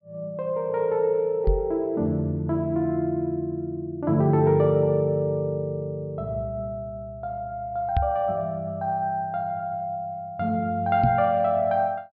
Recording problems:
treble missing; nothing above 5.5 kHz
microphone bump; at 1.5 s, at 8 s and at 11 s; peak +5 dB vs average level

